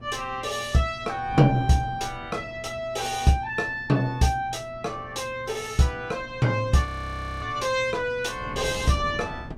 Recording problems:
hum; 60 Hz, harmonics up to 360 Hz, SNR 22 dB
wind on the microphone; below 290 Hz, SNR 17 dB
audio freezing; at 7 s for 0.5 s

